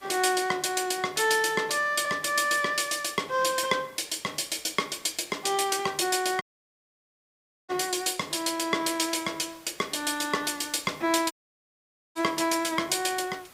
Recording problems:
background hiss; slope -2 dB per octave, SNR 26 dB
dropout; at 6.5 s for 1.5 s and at 11 s for 1 s

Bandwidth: 15.5 kHz